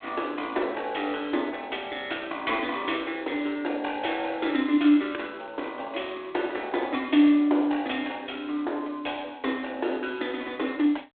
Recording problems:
phone line; 260 Hz to 3.6 kHz, G.726

